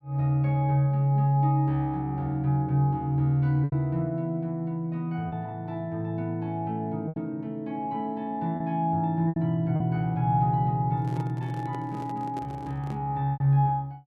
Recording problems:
packet loss; 3% of the sound replaced, filled with repeated pitch periods
microphone handling noise; from 11 to 13 s; peak -9 dB vs average level

